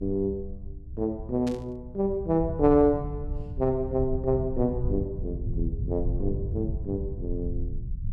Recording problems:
low-frequency rumble; below 100 Hz, SNR 7 dB
static burst; at 1.5 s; peak -9 dB vs average level

